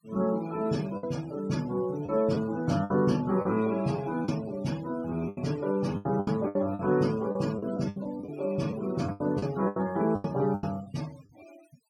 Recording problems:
denoising artefacts; signal-to-artefact ratio 20 dB
lost packets; 10% of the sound replaced, filled with the last packet

